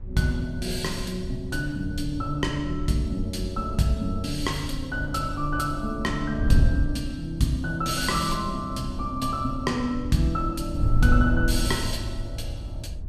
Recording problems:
wind on the microphone; below 76 Hz, SNR 6 dB

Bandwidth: 15 kHz